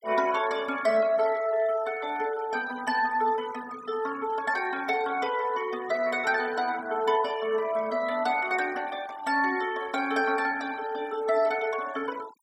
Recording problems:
noise reduction artefacts; signal-to-artefact ratio 17 dB

